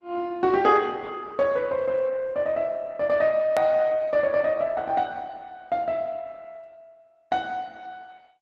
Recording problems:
codec artefacts; Opus, log-spectral distance 2 dB, nothing above 13.1 kHz
edit click; at 3.5 s

